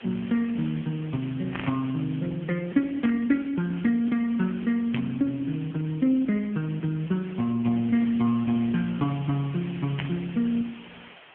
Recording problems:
telephone audio; 170 Hz to 3.5 kHz, AMR-NB
hiss; SNR 19 dB
burst of static; 4 times, first at 1.5 s; peak -3 dB vs average level

